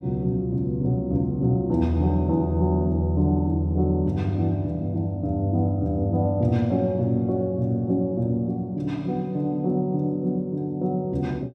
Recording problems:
none

